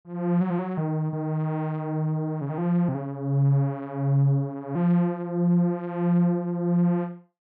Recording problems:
none

